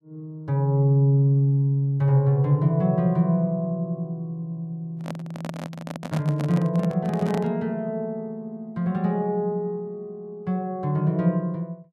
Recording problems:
microphone handling noise; from 5 to 7.5 s; peak -4 dB vs average level

